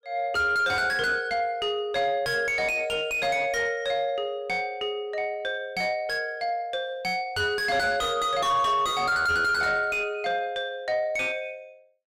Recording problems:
distorted audio; soft clipping, signal-to-distortion ratio 7 dB

